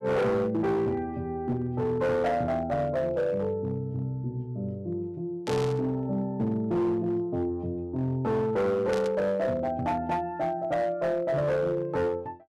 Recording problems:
distorted audio; hard clipping, signal-to-distortion ratio 10 dB
static burst; at 5.5 s and at 9 s; peak -6 dB vs average level

